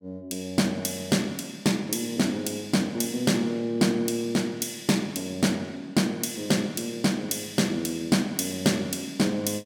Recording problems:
none

